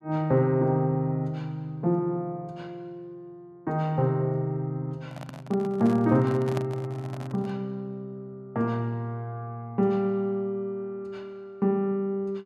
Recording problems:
handling noise; from 5 to 7.5 s; peak -2 dB vs average level

